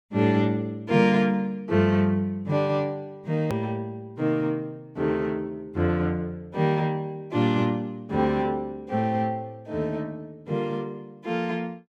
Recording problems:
hard cut with a click; at 3.5 s

